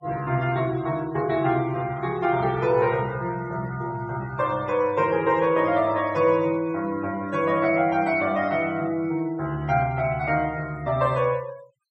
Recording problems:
noise reduction artefacts; signal-to-artefact ratio 23 dB

